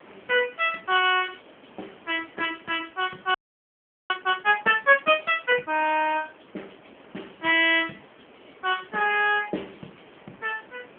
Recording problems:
telephone audio; 220 Hz to 3.3 kHz, AMR-NB
hiss; SNR 27 dB
audio freezing; at 3.5 s for 1 s

